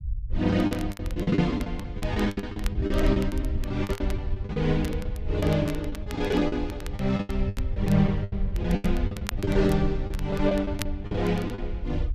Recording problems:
rumble; below 78 Hz, SNR 6 dB
crackling; vinyl, SNR 17 dB
packet loss; 18% of the sound replaced, filled with the last packet

